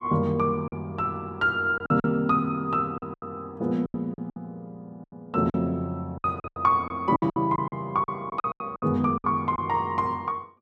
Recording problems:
packet loss; 12% of the sound replaced, filled with silence

